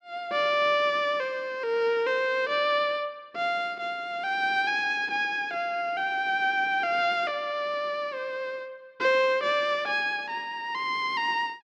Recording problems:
none

